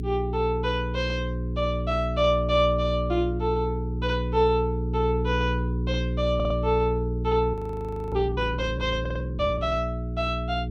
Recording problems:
hum; 60 Hz, harmonics up to 420 Hz, SNR 3 dB
audio stuttering; at 6.5 s and at 9 s
frozen audio; at 7.5 s for 0.5 s

